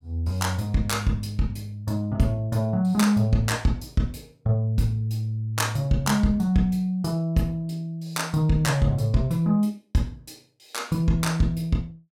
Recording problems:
none

